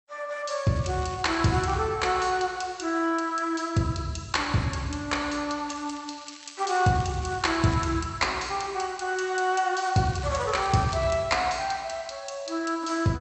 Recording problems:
codec artefacts; MP2, log-spectral distance 5 dB, nothing above 8 kHz
crackling; from 1 to 2 s, from 5.5 to 8 s and from 10 to 11 s; loose cable, SNR 21 dB

